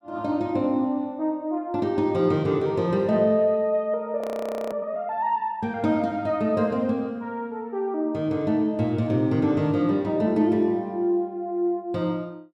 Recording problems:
audio freezing; at 4 s for 0.5 s

